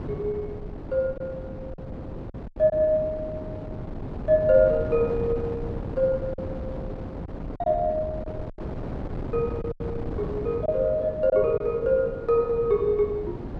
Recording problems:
wind noise; below 370 Hz, SNR 10 dB
packet loss; 4% of the sound replaced, filled with silence

